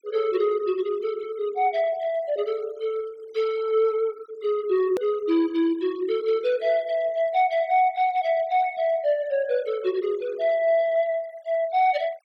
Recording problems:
denoising artefacts; signal-to-artefact ratio 24 dB
edit click; at 5 s

